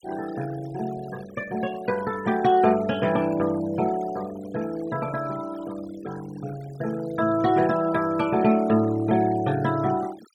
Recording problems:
noise reduction artefacts; signal-to-artefact ratio 18 dB

